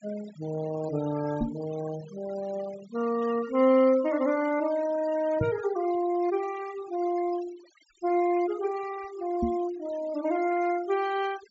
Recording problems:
treble cut off; nothing above 8 kHz
denoising artefacts; signal-to-artefact ratio 17 dB
knock on the microphone; at 1.5 s, at 5.5 s and at 9.5 s; peak +3 dB vs average level

